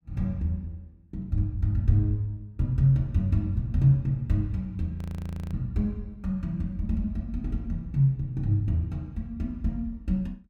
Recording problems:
frozen audio; at 5 s for 0.5 s

